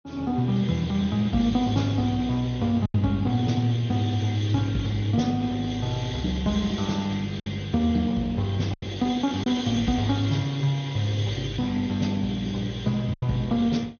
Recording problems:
treble missing; nothing above 6.4 kHz
codec artefacts; Speex, log-spectral distance 3 dB
packet loss; 2% of the sound replaced, filled with silence

